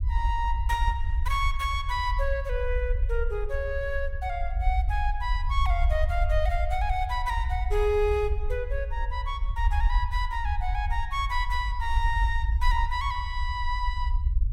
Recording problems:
rumble; below 64 Hz, SNR 0 dB

